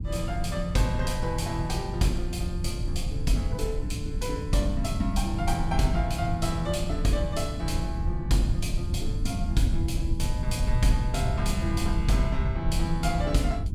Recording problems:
rumble; below 100 Hz, SNR 1 dB

